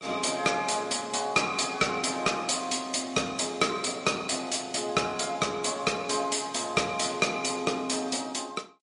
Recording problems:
lossy codec; MP3, log-spectral distance 6 dB, nothing above 10.4 kHz
distortion; soft clipping, signal-to-distortion ratio 12 dB

